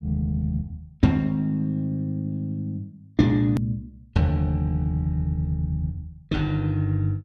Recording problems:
click at an edit; at 3.5 s

